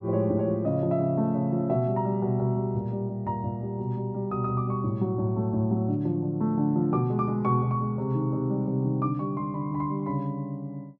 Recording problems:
none

